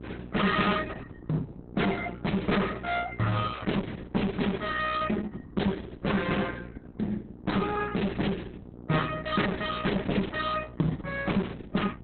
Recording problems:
codec artefacts; Opus, log-spectral distance 5 dB, nothing above 4 kHz
distorted audio; hard clipping, uneven, signal-to-distortion ratio 7 dB
hum; 60 Hz, harmonics up to 960 Hz, SNR 16 dB

